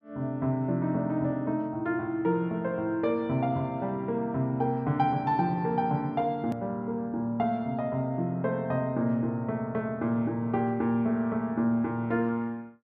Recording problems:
edit click; at 6.5 s

